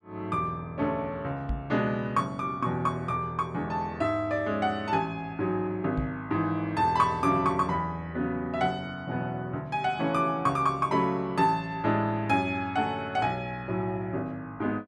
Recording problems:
microphone thump; at 1.5 s and at 6 s; peak 0 dB vs average level

